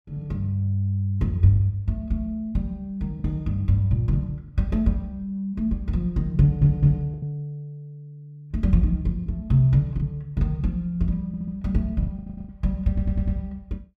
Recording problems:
lost packets; 3% of the sound replaced, filled with the last packet
audio stuttering; 4 times, first at 6.5 s

